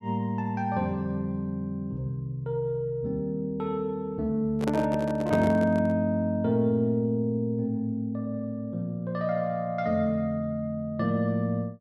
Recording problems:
handling noise; from 4.5 to 6 s; peak 0 dB vs average level

